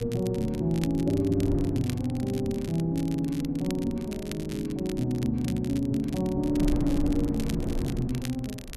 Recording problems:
wind on the microphone; below 200 Hz, SNR 10 dB
crackling; vinyl, SNR 17 dB

